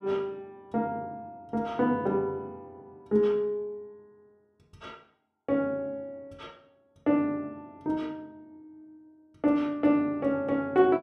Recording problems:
none

